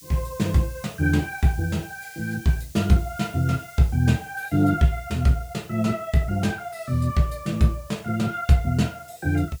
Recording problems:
hiss; slope +6 dB per octave, SNR 23 dB

